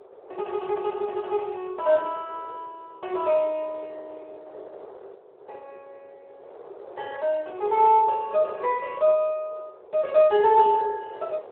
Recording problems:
phone line; 340 Hz to 3.1 kHz, Speex
wind on the microphone; below 650 Hz, SNR 20 dB

